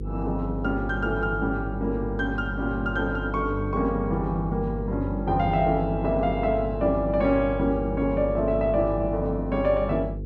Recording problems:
mains hum; 50 Hz, harmonics up to 500 Hz, SNR 7 dB

